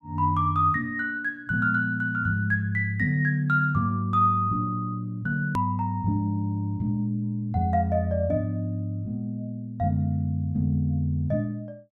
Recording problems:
hard cut with a click; at 5.5 s

